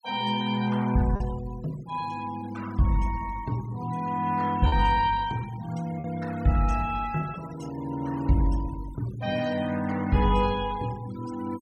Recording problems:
noise reduction artefacts; signal-to-artefact ratio 19 dB
packet loss; 1% of the sound replaced, filled with repeated pitch periods

